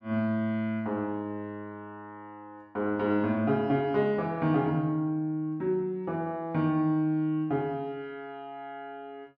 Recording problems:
none

